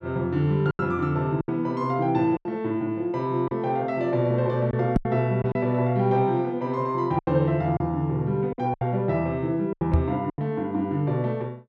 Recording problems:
lost packets; 7% of the sound replaced, filled with silence
microphone bump; at 5 s and at 10 s; peak +7 dB vs average level

